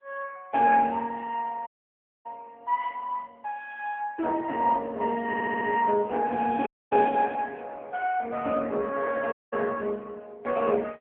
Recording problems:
phone line; 260 Hz to 2.8 kHz, AMR-NB
dropout; at 1.5 s for 0.5 s, at 6.5 s and at 9.5 s
stutter; at 5.5 s

